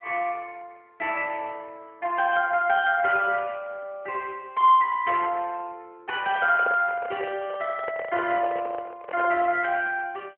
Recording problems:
phone line; 240 Hz to 3.3 kHz, AMR-NB
handling noise; from 6 to 9.5 s; peak -4 dB vs average level

